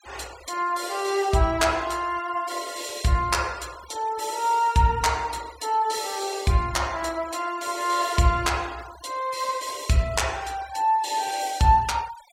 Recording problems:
denoising artefacts; signal-to-artefact ratio 20 dB

